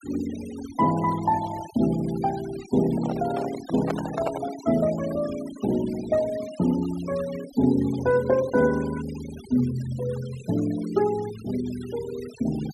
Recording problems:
noise reduction artefacts; signal-to-artefact ratio 16 dB
handling noise; from 3 to 4.5 s; peak +1 dB vs average level

